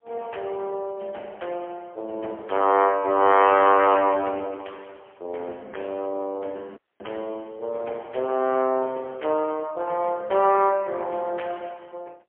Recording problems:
telephone audio; 300 Hz to 3.2 kHz, AMR-NB, then MP3
audio cutting out; at 7 s

